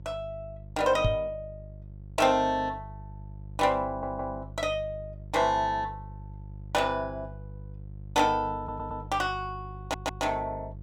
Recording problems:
hum; 50 Hz, harmonics up to 400 Hz, SNR 14 dB
knock on the microphone; at 1 s; peak +5 dB vs average level
audio stuttering; at 4 s, at 8.5 s and at 10 s

